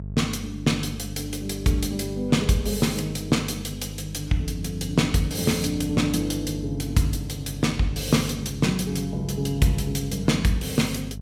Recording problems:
hum; 50 Hz, harmonics up to 450 Hz, SNR 10 dB

